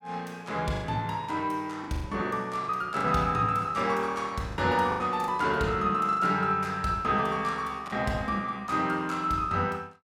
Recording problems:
lost packets; 6% of the sound replaced, filled with the last packet

